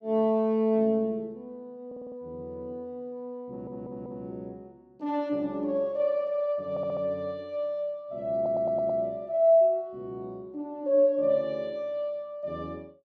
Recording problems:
stutter; 4 times, first at 2 s

